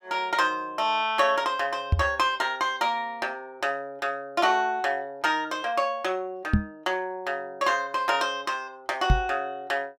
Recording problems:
microphone thump; at 2 s, at 6.5 s and at 9 s; peak +8 dB vs average level

